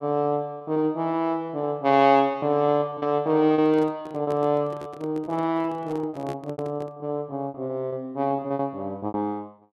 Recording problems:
packet loss; 12% of the sound replaced, filled with repeated pitch periods
microphone handling noise; from 3.5 to 7 s; peak -7 dB vs average level

